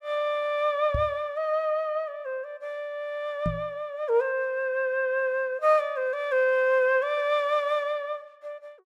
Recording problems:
microphone thump; at 1 s and at 3.5 s; peak +1 dB vs average level

